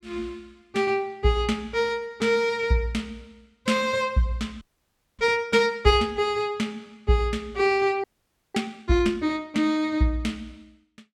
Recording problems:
audio freezing; at 4.5 s for 0.5 s and at 8 s for 0.5 s

